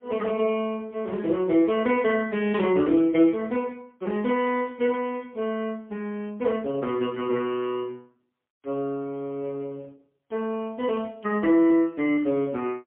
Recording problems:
phone line; 170 Hz to 3.3 kHz, AMR-NB, then MP3

